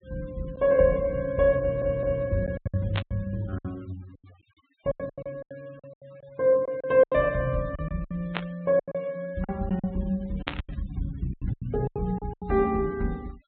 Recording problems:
treble missing; nothing above 4 kHz
denoising artefacts; signal-to-artefact ratio 27 dB
packet loss; 13% of the sound replaced, filled with silence
audio stuttering; at 1.5 s
burst of static; at 3 s, at 8.5 s and at 10 s; peak +1 dB vs average level

